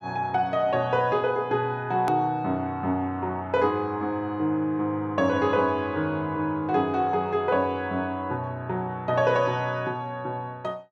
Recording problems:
hard cut with a click; at 2 s

